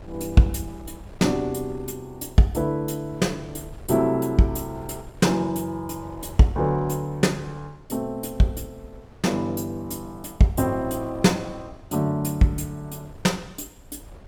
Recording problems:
wind noise; below 170 Hz, SNR 22 dB

